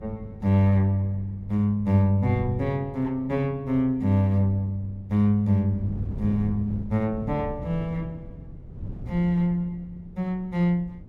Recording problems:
wind noise; below 170 Hz, SNR 15 dB

